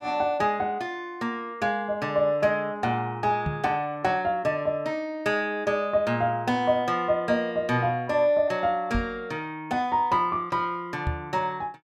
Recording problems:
microphone bump; at 3.5 s, at 9 s and at 11 s; peak +1 dB vs average level

